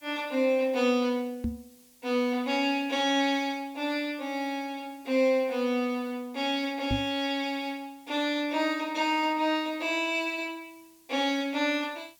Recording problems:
background hiss; SNR 29 dB
knock on the microphone; at 1.5 s and at 7 s; peak +2 dB vs average level

